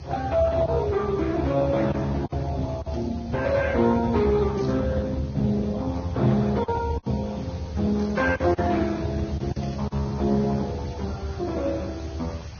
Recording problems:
lossy codec; Speex, then Vorbis, log-spectral distance 4 dB, nothing above 6.2 kHz
hiss; slope -1 dB per octave, SNR 23 dB
rumble; below 120 Hz, strongest tone 74 Hz, SNR 9 dB
packet loss; 4% of the sound replaced, filled with silence
static burst; 5 times, first at 3 s; peak -15 dB vs average level

